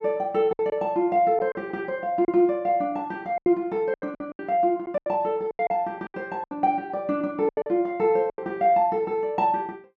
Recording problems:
packet loss; 10% of the sound replaced, filled with silence

